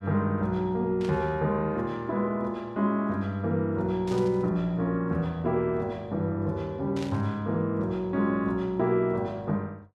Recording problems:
static burst; at 1 s, at 4 s and at 7 s; peak -10 dB vs average level

